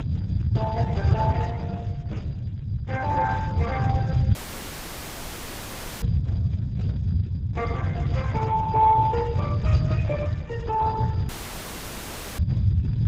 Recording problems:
lossy compression; MP3, then Speex, log-spectral distance 2 dB
low-frequency rumble; below 140 Hz, SNR -1 dB
audio cutting out; at 4.5 s for 1.5 s and at 11 s for 1 s

